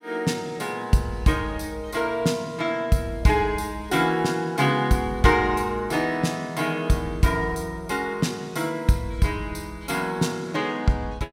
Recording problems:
none

